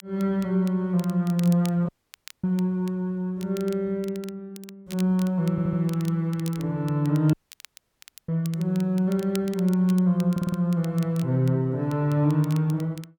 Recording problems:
crackling; vinyl, SNR 22 dB
dropout; at 2 s for 0.5 s and at 7.5 s for 1 s
audio stuttering; at 5.5 s and at 10 s

